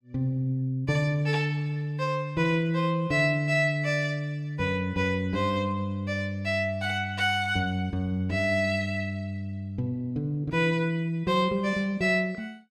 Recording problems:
none

